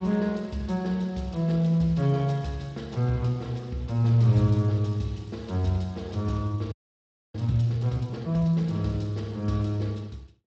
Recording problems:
codec artefacts; Speex, log-spectral distance 3 dB
frozen audio; at 6.5 s for 0.5 s

